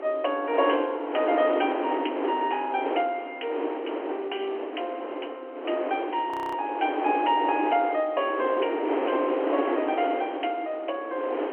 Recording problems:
phone line; 280 Hz to 3.2 kHz, G.711
wind noise; below 770 Hz, SNR 3 dB
frozen audio; at 6.5 s

